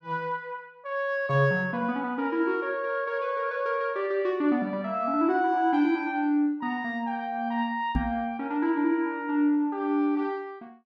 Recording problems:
microphone bump; at 8 s; peak +2 dB vs average level

